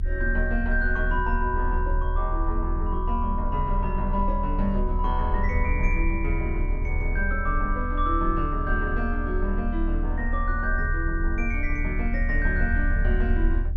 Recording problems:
low-frequency rumble; below 72 Hz, strongest tone 32 Hz, SNR 0 dB

